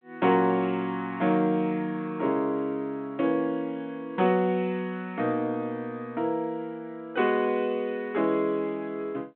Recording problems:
telephone audio; 130 Hz to 3.7 kHz, G.726

